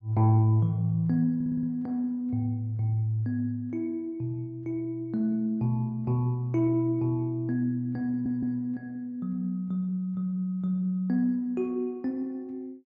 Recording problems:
audio stuttering; at 1.5 s and at 8 s

